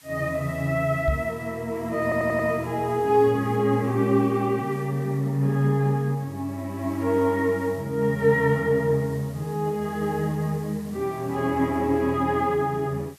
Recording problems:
background hiss; SNR 25 dB
microphone bump; at 1 s; peak +2 dB vs average level
audio stuttering; at 2 s

